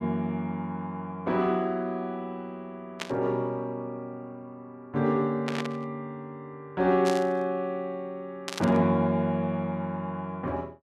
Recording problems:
burst of static; 4 times, first at 3 s; peak 0 dB vs average level

